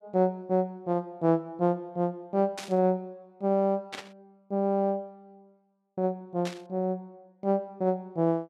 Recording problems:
burst of static; at 2.5 s, at 4 s and at 6.5 s; peak -4 dB vs average level

